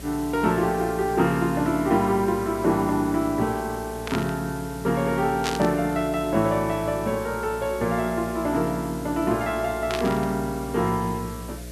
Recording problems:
hum; 60 Hz, harmonics up to 660 Hz, SNR 16 dB
hiss; slope +2 dB per octave, SNR 18 dB
burst of static; at 4 s, at 5.5 s and at 10 s; peak 0 dB vs average level

